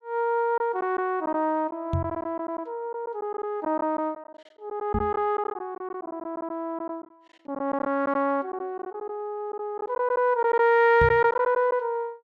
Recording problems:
lost packets; 8% of the sound replaced, filled with silence
microphone thump; at 2 s, at 5 s and at 11 s; peak +2 dB vs average level

